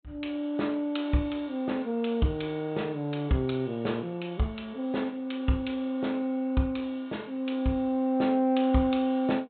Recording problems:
low-pass filter; nothing above 4 kHz

